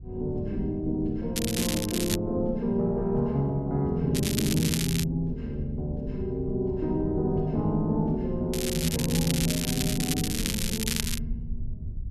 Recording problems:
rumble; below 86 Hz, SNR 12 dB
crackle; at 1.5 s, at 4 s and from 8.5 to 11 s; loose cable, SNR 3 dB

